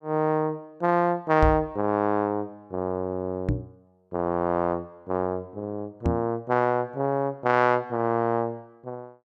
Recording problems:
knock on the microphone; at 1.5 s, at 3.5 s and at 6 s; peak +5 dB vs average level

